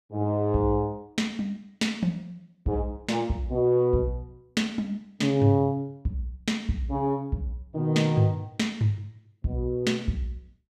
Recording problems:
none

